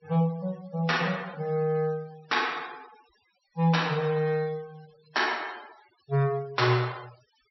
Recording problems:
low-pass filter; nothing above 5.7 kHz
noise reduction artefacts; signal-to-artefact ratio 23 dB

